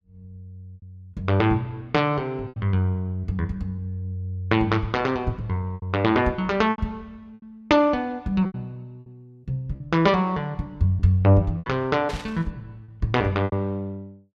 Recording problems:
lost packets; 6% of the sound replaced, filled with repeated pitch periods
static burst; at 12 s; peak -9 dB vs average level

